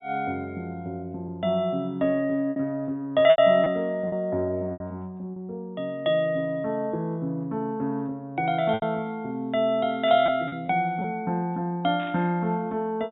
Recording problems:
low-pass filter; nothing above 4 kHz
packet loss; 4% of the sound replaced, filled with repeated pitch periods
burst of static; at 10 s and at 12 s; peak -14 dB vs average level

